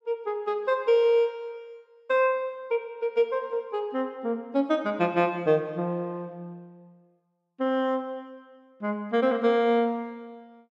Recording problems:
none

